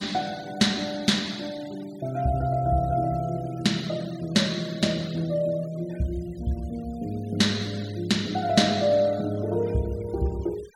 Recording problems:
noise reduction artefacts; signal-to-artefact ratio 22 dB

